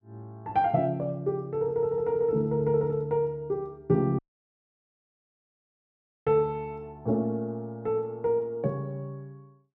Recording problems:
dropout; at 4 s for 2 s

